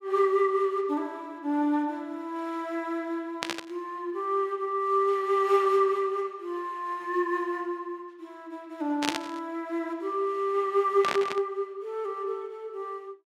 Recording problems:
burst of static; at 3.5 s, at 9 s and at 11 s; peak +4 dB vs average level

